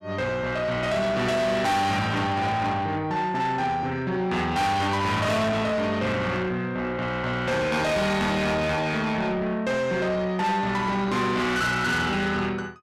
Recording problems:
distortion; soft clipping, signal-to-distortion ratio 8 dB

